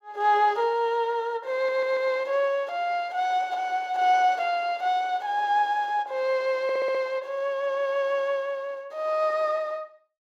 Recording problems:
audio stuttering; at 1.5 s and at 6.5 s

